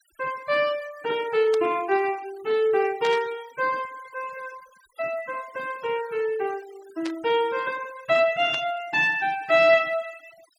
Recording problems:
denoising artefacts; signal-to-artefact ratio 22 dB
burst of static; 4 times, first at 1.5 s; peak -7 dB vs average level

